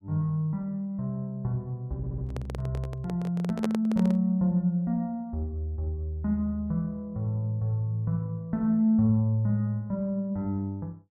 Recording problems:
stutter; at 2 s
handling noise; from 2 to 4 s; peak +1 dB vs average level

